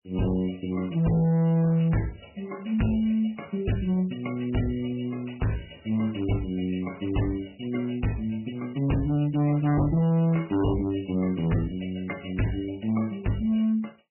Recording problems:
lossy codec; MP3, log-spectral distance 7 dB, nothing above 2.9 kHz
distorted audio; hard clipping, signal-to-distortion ratio 7 dB

